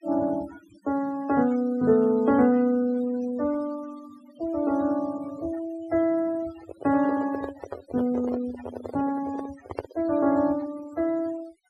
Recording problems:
denoising artefacts; signal-to-artefact ratio 19 dB
microphone handling noise; from 6.5 to 10 s; peak -1 dB vs average level

